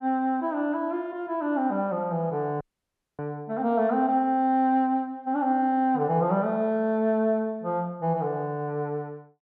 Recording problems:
dropout; at 2.5 s for 0.5 s

